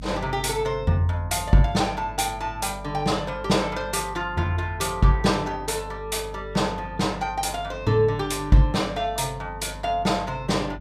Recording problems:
hum; 50 Hz, harmonics up to 300 Hz, SNR 15 dB

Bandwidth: 14.5 kHz